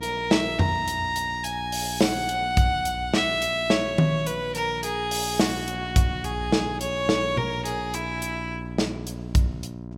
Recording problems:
hum; 60 Hz, harmonics up to 1 kHz, SNR 12 dB

